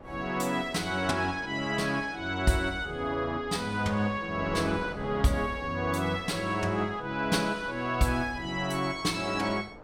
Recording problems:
wind noise; below 770 Hz, SNR 17 dB

